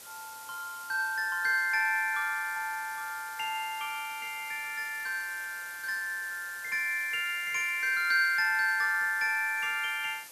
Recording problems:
hiss; slope 0 dB per octave, SNR 16 dB

